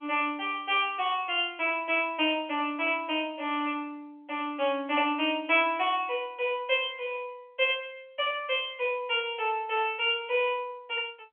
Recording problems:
telephone audio; 300 Hz to 3.4 kHz, G.711

